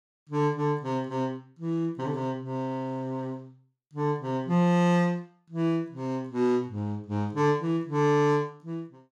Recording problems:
none

